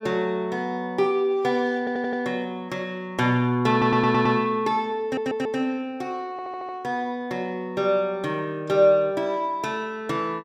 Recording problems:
audio stuttering; 4 times, first at 2 s

